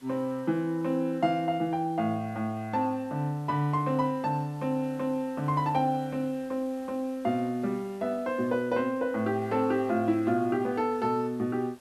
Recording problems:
hiss; slope -3 dB per octave, SNR 27 dB

